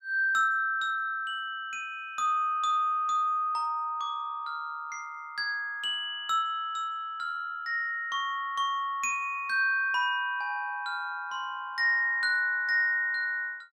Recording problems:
none

